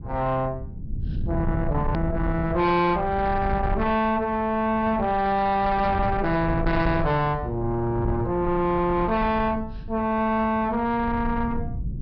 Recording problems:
treble cut off; nothing above 5.5 kHz
distortion; soft clipping, signal-to-distortion ratio 12 dB
rumble; below 130 Hz, SNR 9 dB
click at an edit; at 2 s

